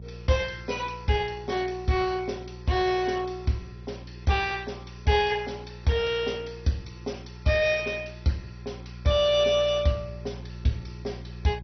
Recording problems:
lossy codec; MP2, log-spectral distance 4 dB, nothing above 6 kHz
electrical hum; 60 Hz, harmonics up to 420 Hz, SNR 16 dB

